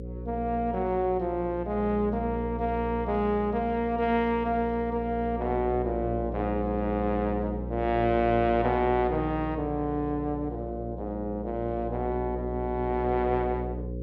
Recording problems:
hum; 60 Hz, harmonics up to 540 Hz, SNR 8 dB

